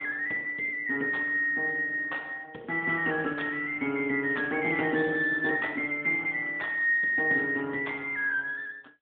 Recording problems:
telephone audio; 190 Hz to 3.6 kHz, AMR-NB

